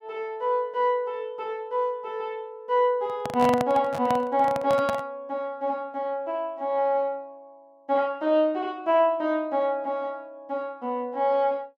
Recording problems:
microphone handling noise; from 3 to 5 s; peak +1 dB vs average level

